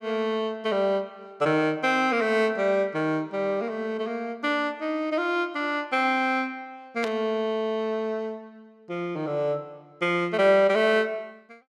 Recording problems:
static burst; at 7 s; peak -5 dB vs average level

